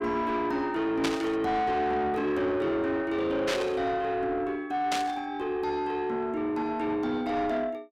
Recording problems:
distorted audio; soft clipping, signal-to-distortion ratio 9 dB
static burst; at 1 s, at 3.5 s and at 5 s; peak +2 dB vs average level

